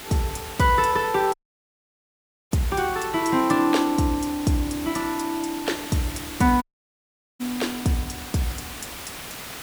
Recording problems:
background hiss; slope -2 dB per octave, SNR 12 dB
dropout; at 1.5 s for 1 s and at 6.5 s for 1 s

